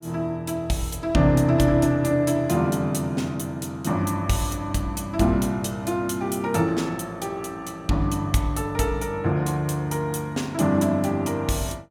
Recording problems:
none

